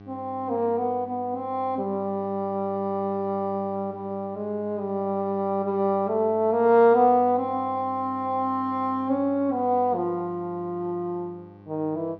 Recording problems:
treble missing; nothing above 6.3 kHz
electrical hum; 50 Hz, harmonics up to 1.9 kHz, SNR 21 dB

